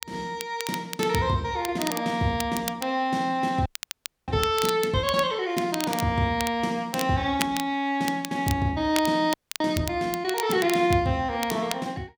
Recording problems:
crackling; vinyl, SNR 10 dB
frozen audio; at 3.5 s for 0.5 s and at 9.5 s

